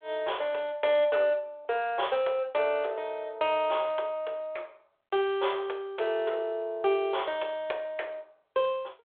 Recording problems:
phone line; 340 Hz to 3.5 kHz, G.726

